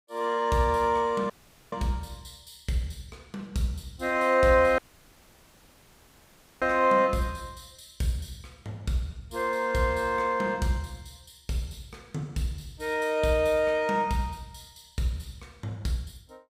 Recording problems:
dropout; at 1.5 s and at 5 s for 2 s

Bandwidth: 15.5 kHz